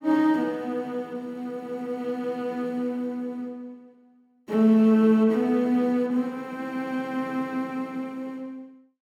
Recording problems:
none

